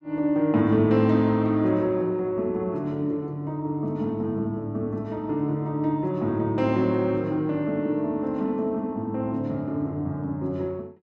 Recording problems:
none

